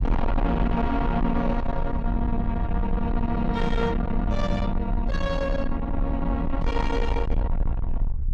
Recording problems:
distortion; soft clipping, signal-to-distortion ratio 8 dB
rumble; below 64 Hz, SNR 3 dB

